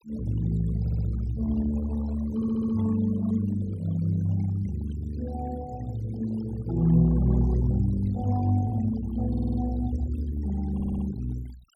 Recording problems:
noise reduction artefacts; signal-to-artefact ratio 21 dB
audio stuttering; 4 times, first at 1 s

